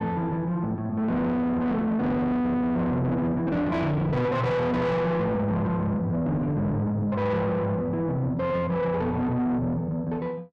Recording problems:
distorted audio; soft clipping, signal-to-distortion ratio 7 dB

